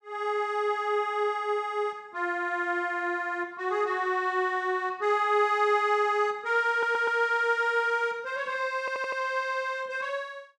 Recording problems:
stutter; at 6.5 s and at 9 s

